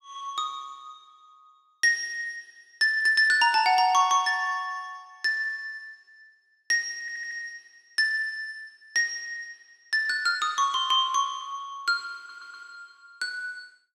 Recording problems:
stutter; at 7 s and at 12 s

